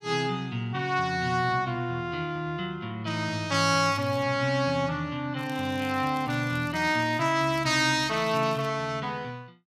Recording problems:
crackle; at 4 s and from 5.5 to 8.5 s; loose cable, SNR 25 dB

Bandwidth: 14.5 kHz